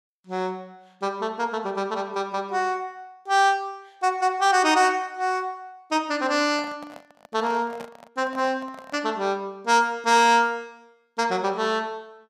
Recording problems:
handling noise; from 6.5 to 9 s; peak -10 dB vs average level

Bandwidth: 15 kHz